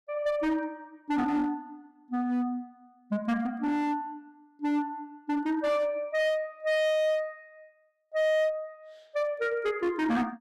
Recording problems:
distortion; hard clipping, uneven, signal-to-distortion ratio 11 dB

